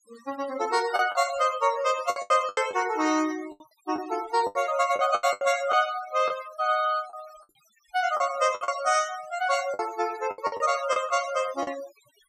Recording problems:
denoising artefacts; signal-to-artefact ratio 16 dB
lost packets; 10% of the sound replaced, filled with the last packet

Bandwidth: 15 kHz